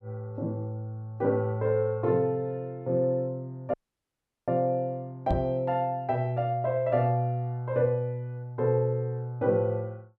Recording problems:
audio cutting out; at 3.5 s for 0.5 s
knock on the microphone; at 5.5 s; peak +2 dB vs average level

